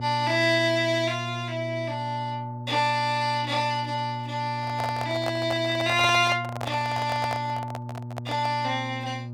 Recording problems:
hum; 60 Hz, harmonics up to 600 Hz, SNR 10 dB
handling noise; from 4.5 to 8.5 s; peak -1 dB vs average level

